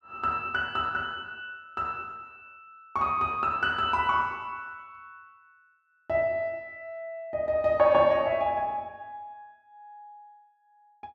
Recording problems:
none

